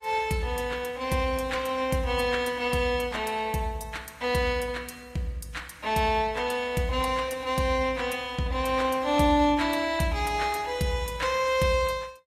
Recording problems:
codec artefacts; AAC, log-spectral distance 3 dB, nothing above 13.5 kHz

